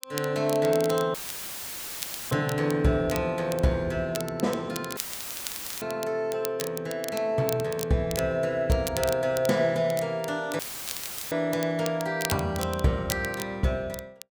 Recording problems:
crackling; vinyl, SNR 11 dB
audio cutting out; at 1 s for 1 s, at 5 s for 1 s and at 11 s for 0.5 s; filled with static

